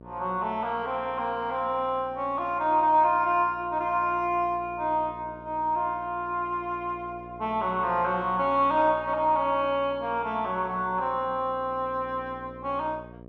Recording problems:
electrical hum; 60 Hz, harmonics up to 1.2 kHz, SNR 20 dB

